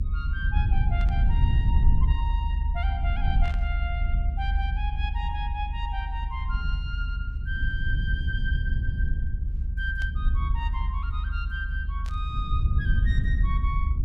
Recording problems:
rumble; below 70 Hz, SNR -9 dB
burst of static; 4 times, first at 1 s; peak -5 dB vs average level

